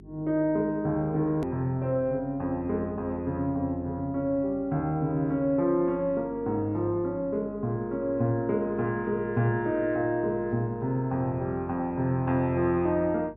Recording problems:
electrical hum; 50 Hz, harmonics up to 400 Hz, SNR 22 dB
click at an edit; at 1.5 s

